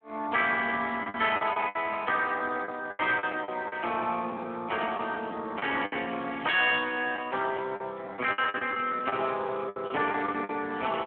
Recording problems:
telephone audio; 260 Hz to 3.3 kHz, Speex
lost packets; 11% of the sound replaced, filled with the last packet

